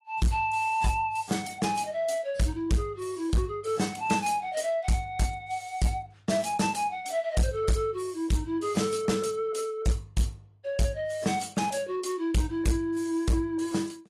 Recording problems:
lossy codec; AAC, log-spectral distance 3 dB, nothing above 12 kHz
distortion; hard clipping, signal-to-distortion ratio 10 dB

